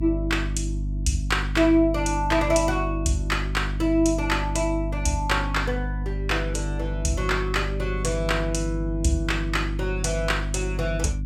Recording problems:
hum; 50 Hz, harmonics up to 300 Hz, SNR 4 dB

